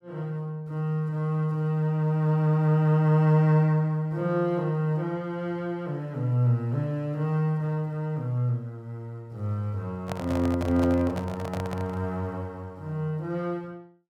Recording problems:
handling noise; from 10 to 12 s; peak -3 dB vs average level

